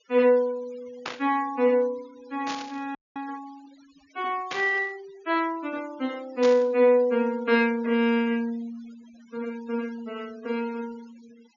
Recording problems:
low-pass filter; nothing above 7 kHz
denoising artefacts; signal-to-artefact ratio 26 dB
static burst; 4 times, first at 1 s; peak -3 dB vs average level
audio freezing; at 3 s

